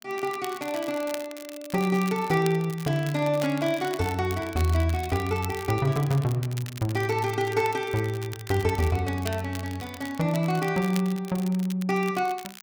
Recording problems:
crackle; vinyl, SNR 15 dB

